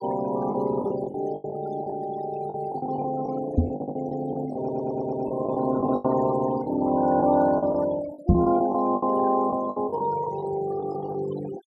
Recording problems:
noise reduction artefacts; signal-to-artefact ratio 16 dB
lost packets; 12% of the sound replaced, filled with the last packet
microphone bump; at 3.5 s and at 8.5 s; peak +10 dB vs average level
stutter; at 4 s and at 4.5 s

